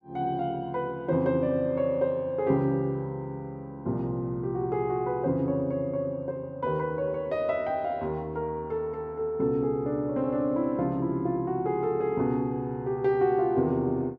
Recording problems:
none

